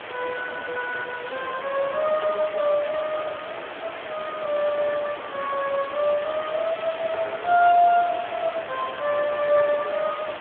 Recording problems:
telephone audio; 240 Hz to 3.4 kHz, Speex
background hiss; SNR 10 dB

